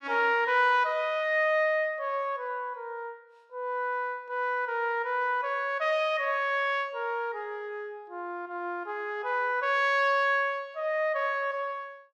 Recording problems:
none

